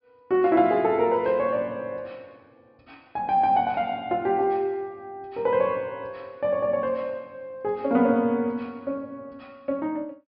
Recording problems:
treble cut off; nothing above 5.5 kHz

